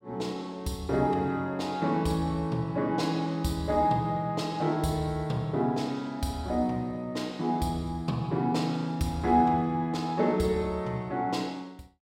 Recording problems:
none

